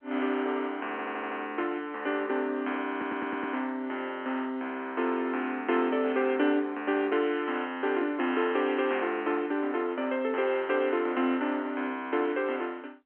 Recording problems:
telephone audio; 220 Hz to 3.3 kHz, G.711
stutter; at 1 s and at 3 s

